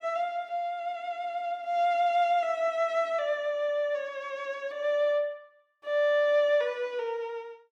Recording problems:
none

